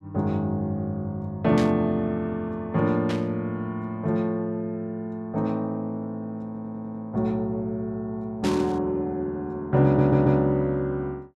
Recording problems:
static burst; at 1.5 s, at 3 s and at 8.5 s; peak -5 dB vs average level
stutter; at 6.5 s and at 10 s

